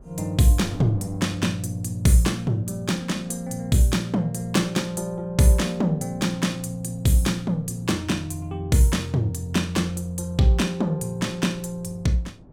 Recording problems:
wind on the microphone; below 280 Hz, SNR 22 dB

